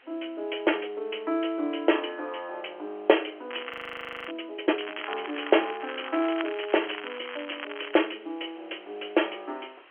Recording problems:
telephone audio; 260 Hz to 3.3 kHz, G.711
hiss; SNR 25 dB
crackling; at 3.5 s and from 5 to 8 s; loose cable, SNR 9 dB
audio freezing; at 3.5 s for 0.5 s

